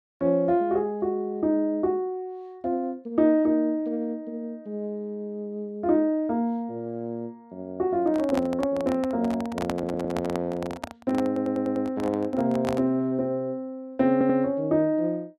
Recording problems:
handling noise; from 8 to 13 s; peak -1 dB vs average level
stutter; at 9.5 s, at 11 s and at 14 s

